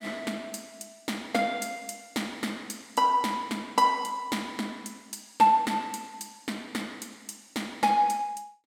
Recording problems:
none

